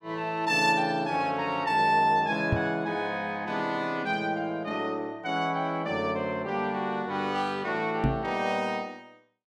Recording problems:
microphone thump; at 2.5 s and at 8 s; peak +5 dB vs average level

